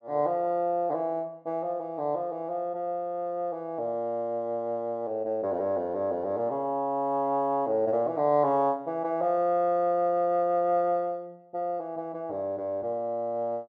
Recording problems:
none

